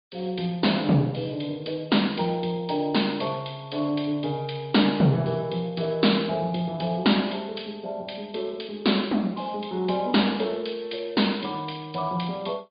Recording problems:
low-pass filter; nothing above 4.8 kHz
codec artefacts; MP2, then MP3, log-spectral distance 6 dB

